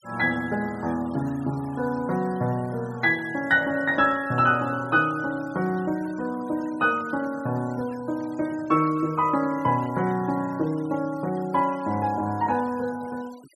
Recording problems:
denoising artefacts; signal-to-artefact ratio 23 dB

